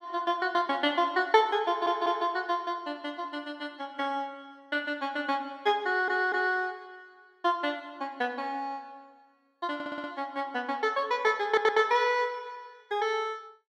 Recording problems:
stutter; 4 times, first at 1.5 s

